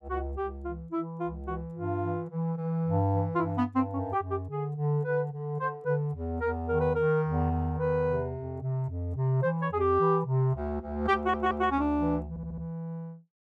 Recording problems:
stutter; at 11 s and at 12 s

